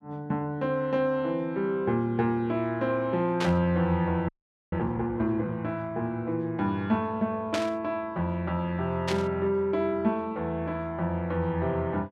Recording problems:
static burst; at 3.5 s, at 7.5 s and at 9 s; peak +1 dB vs average level
frozen audio; at 4.5 s

